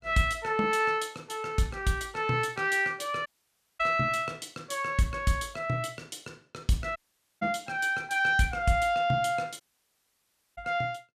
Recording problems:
audio cutting out; at 3.5 s for 0.5 s, at 7 s and at 9.5 s for 1 s

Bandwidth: 14 kHz